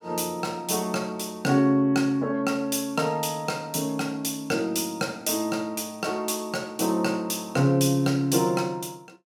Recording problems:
none

